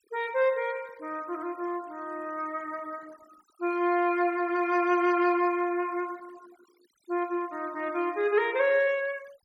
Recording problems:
denoising artefacts; signal-to-artefact ratio 25 dB

